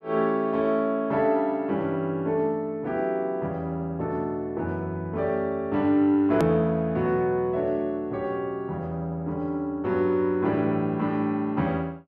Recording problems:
hard cut with a click; at 6.5 s

